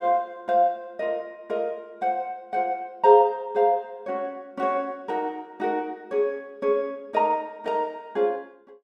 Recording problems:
none

